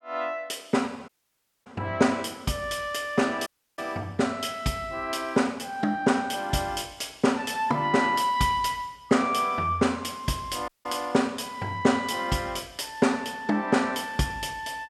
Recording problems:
dropout; at 1 s for 0.5 s, at 3.5 s and at 11 s

